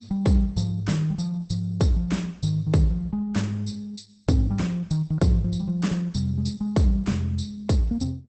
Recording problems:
lossy compression; Opus, log-spectral distance 3 dB, nothing above 8.2 kHz

